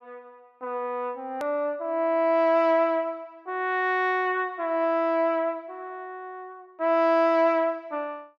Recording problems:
hard cut with a click; at 1.5 s

